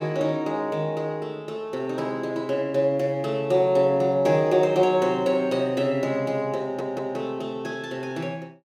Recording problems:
stutter; at 6.5 s

